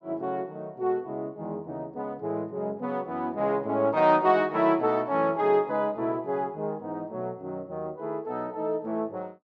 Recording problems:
none

